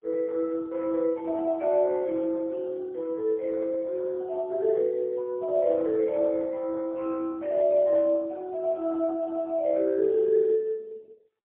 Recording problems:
telephone audio; 300 Hz to 2.1 kHz, AMR-NB, then MP3

